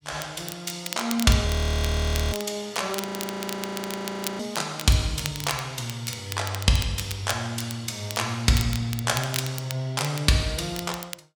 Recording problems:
crackling; vinyl, SNR 10 dB
audio freezing; at 1.5 s for 1 s and at 3 s for 1.5 s

